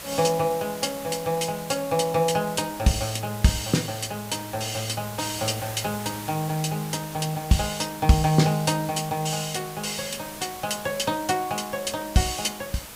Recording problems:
hiss; slope -1 dB per octave, SNR 12 dB

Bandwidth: 15.5 kHz